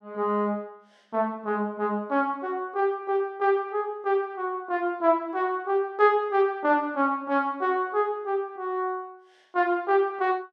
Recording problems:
none

